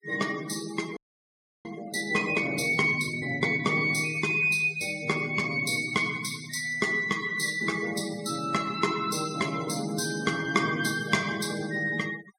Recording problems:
denoising artefacts; signal-to-artefact ratio 16 dB
audio freezing; at 1 s for 0.5 s

